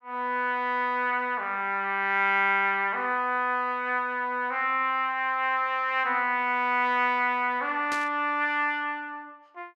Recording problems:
burst of static; at 8 s; peak -6 dB vs average level

